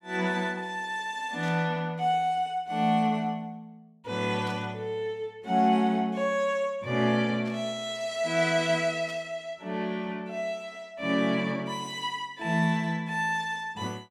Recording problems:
static burst; 4 times, first at 1.5 s; peak -14 dB vs average level

